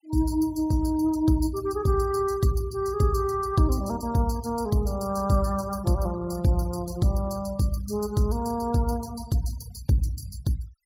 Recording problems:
denoising artefacts; signal-to-artefact ratio 21 dB

